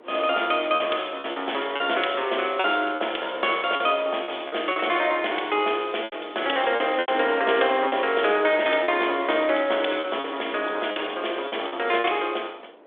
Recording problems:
telephone audio; 280 Hz to 3.5 kHz, G.726
wind on the microphone; below 860 Hz, SNR 20 dB
lost packets; 7% of the sound replaced, filled with repeated pitch periods

